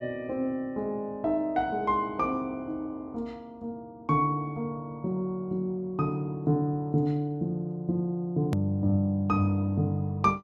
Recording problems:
hard cut with a click; at 8.5 s

